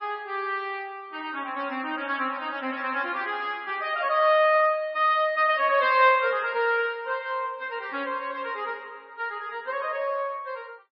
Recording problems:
lossy compression; MP3, log-spectral distance 2 dB, nothing above 4.4 kHz

